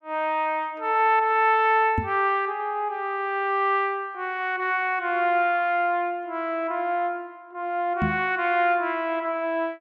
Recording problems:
microphone bump; at 2 s and at 8 s; peak +1 dB vs average level

